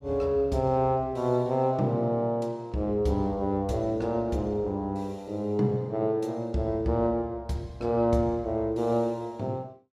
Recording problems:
none

